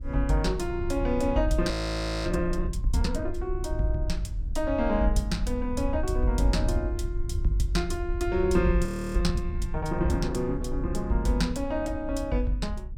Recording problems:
wind on the microphone; below 70 Hz, SNR 5 dB
frozen audio; at 1.5 s for 0.5 s and at 9 s

